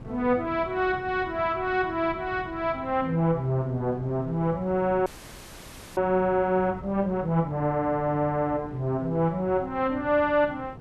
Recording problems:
wind on the microphone; below 300 Hz, SNR 17 dB
frozen audio; at 5 s for 1 s

